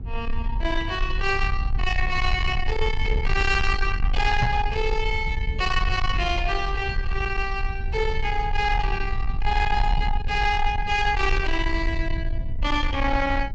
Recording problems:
low-pass filter; nothing above 8 kHz
distorted audio; soft clipping, signal-to-distortion ratio 11 dB
low-frequency rumble; below 64 Hz, SNR 4 dB
microphone thump; at 4.5 s; peak +5 dB vs average level

